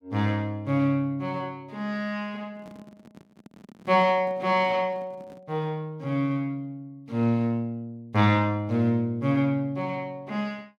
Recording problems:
microphone handling noise; from 2.5 to 5.5 s; peak -13 dB vs average level

